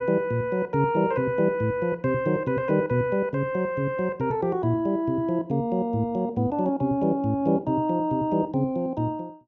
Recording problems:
none

